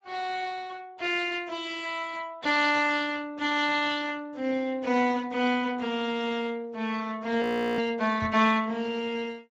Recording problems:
codec artefacts; Speex, log-spectral distance 4 dB, nothing above 18.3 kHz
audio freezing; at 7.5 s
microphone thump; at 8 s; peak -6 dB vs average level

